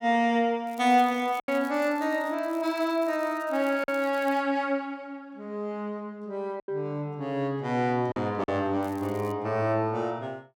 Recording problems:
lost packets; 3% of the sound replaced, filled with silence
crackling; from 0.5 to 4.5 s and at 9 s; loose cable, SNR 25 dB

